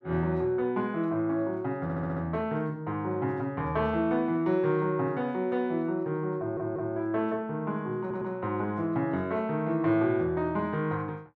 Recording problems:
stutter; at 2 s, at 6.5 s and at 8 s

